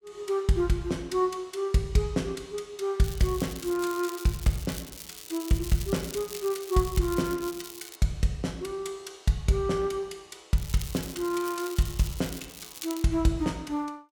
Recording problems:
crackling; from 3 to 8 s and from 11 to 13 s; loose cable, SNR 12 dB

